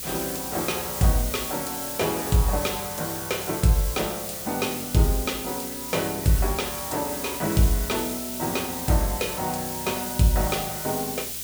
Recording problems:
hum; 60 Hz, harmonics up to 600 Hz, SNR 23 dB
hiss; slope +5 dB per octave, SNR 5 dB

